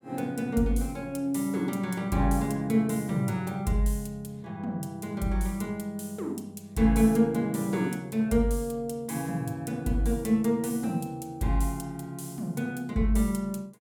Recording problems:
none

